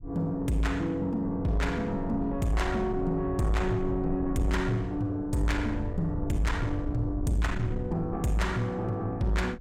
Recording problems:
distorted audio; soft clipping, signal-to-distortion ratio 11 dB
low-frequency rumble; below 94 Hz, SNR 9 dB

